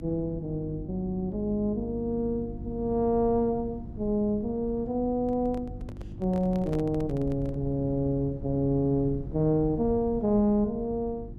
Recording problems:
mains hum; 50 Hz, harmonics up to 350 Hz, SNR 15 dB
low-frequency rumble; below 130 Hz, SNR 14 dB
handling noise; from 5 to 7.5 s; peak -8 dB vs average level

